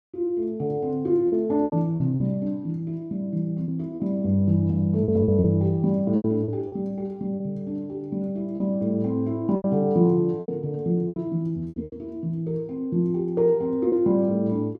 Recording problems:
packet loss; 7% of the sound replaced, filled with repeated pitch periods

